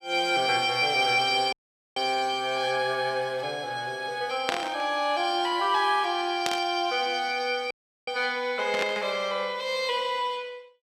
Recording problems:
dropout; at 1.5 s and at 7.5 s
burst of static; at 4.5 s, at 6.5 s and at 8.5 s; peak +2 dB vs average level

